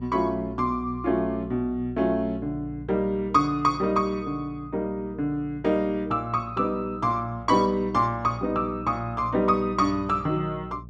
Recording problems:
hum; 60 Hz, harmonics up to 480 Hz, SNR 16 dB

